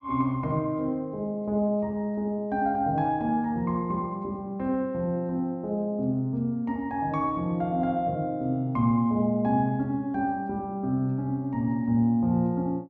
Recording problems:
none

